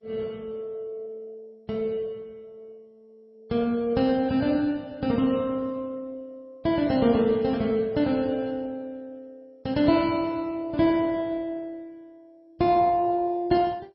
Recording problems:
codec artefacts; MP3, then MP2, log-spectral distance 2 dB, nothing above 4.8 kHz

